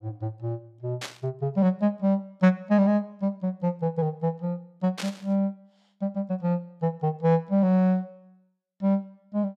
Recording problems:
burst of static; at 1 s and at 5 s; peak -4 dB vs average level

